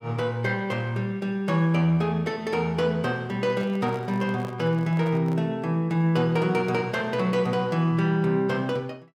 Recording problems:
microphone handling noise; from 3.5 to 5.5 s; peak -10 dB vs average level

